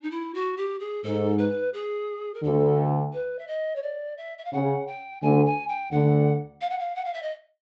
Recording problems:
treble missing; nothing above 8 kHz

